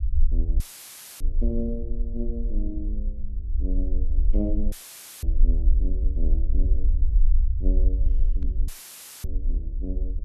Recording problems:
rumble; below 48 Hz, strongest tone 20 Hz, SNR -9 dB
audio cutting out; at 0.5 s for 0.5 s, at 4.5 s for 0.5 s and at 8.5 s for 0.5 s; filled with static
microphone thump; at 8.5 s; peak +4 dB vs average level

